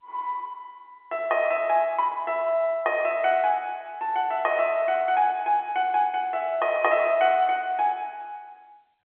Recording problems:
phone line; 280 Hz to 3.3 kHz, G.711

